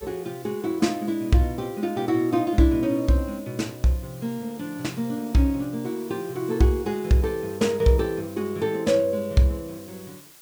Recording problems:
hiss; slope 0 dB per octave, SNR 22 dB

